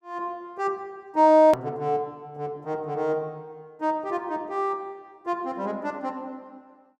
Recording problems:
hard cut with a click; at 1.5 s

